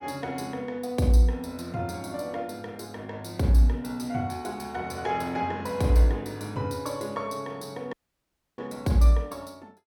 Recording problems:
dropout; at 8 s for 0.5 s

